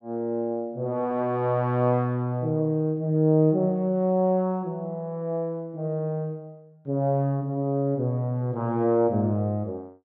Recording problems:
none

